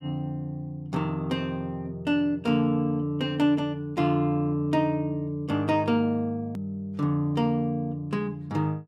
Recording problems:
hard cut with a click; at 6.5 s

